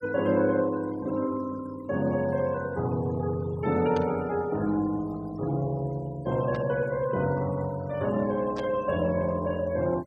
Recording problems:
denoising artefacts; signal-to-artefact ratio 20 dB
static burst; at 4 s, at 6.5 s and at 8.5 s; peak -10 dB vs average level

